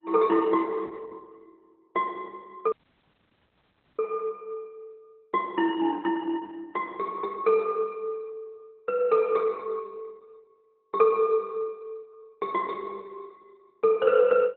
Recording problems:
codec artefacts; Opus, log-spectral distance 2 dB
audio cutting out; at 2.5 s for 1.5 s

